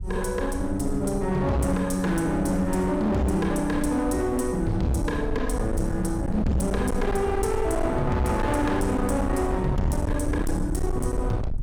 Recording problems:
distortion; hard clipping, uneven, signal-to-distortion ratio 8 dB
rumble; below 100 Hz, SNR 6 dB

